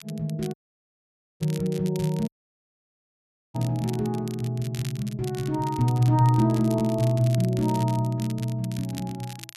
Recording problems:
crackle; vinyl, SNR 18 dB
dropout; at 0.5 s for 1 s and at 2.5 s for 1.5 s

